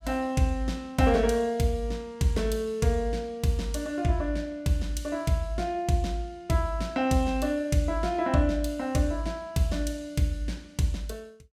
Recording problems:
none

